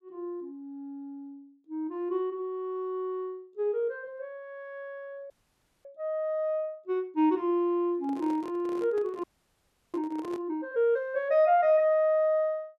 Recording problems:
audio freezing; at 5.5 s for 0.5 s and at 9 s for 0.5 s
handling noise; from 8 to 10 s; peak -10 dB vs average level

